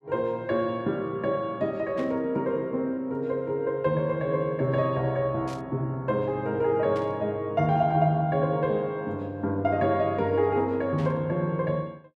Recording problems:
burst of static; 4 times, first at 2 s; peak -13 dB vs average level

